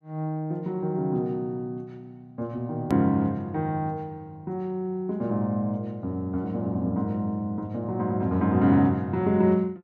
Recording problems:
click at an edit; at 3 s

